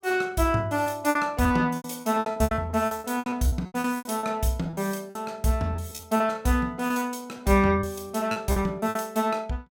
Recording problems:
lost packets; 16% of the sound replaced, filled with repeated pitch periods

